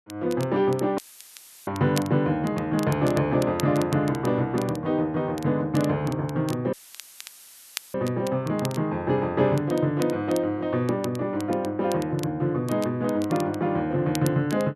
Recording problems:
crackling; vinyl, SNR 18 dB
audio cutting out; at 1 s for 0.5 s and at 6.5 s for 1 s; filled with static

